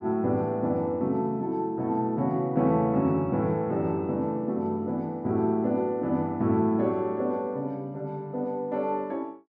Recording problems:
none

